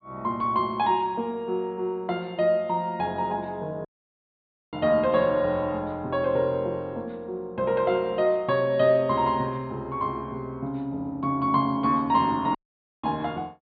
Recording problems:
low-pass filter; nothing above 4.7 kHz
audio cutting out; at 4 s for 1 s and at 13 s

